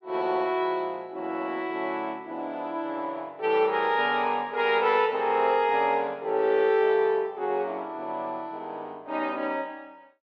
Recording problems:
none

